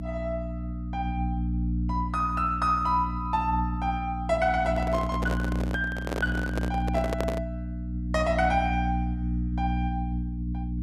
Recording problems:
hum; 60 Hz, harmonics up to 300 Hz, SNR 2 dB
handling noise; from 4.5 to 7.5 s; peak +2 dB vs average level

